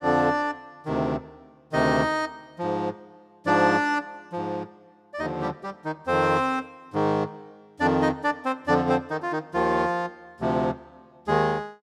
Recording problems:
none

